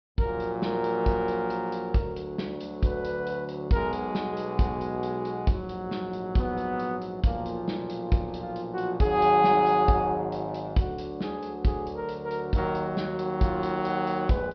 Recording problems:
low-pass filter; nothing above 5.5 kHz

